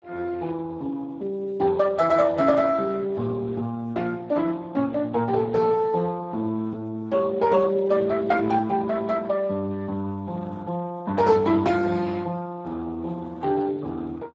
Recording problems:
codec artefacts; Speex, log-spectral distance 3 dB, nothing above 7.3 kHz

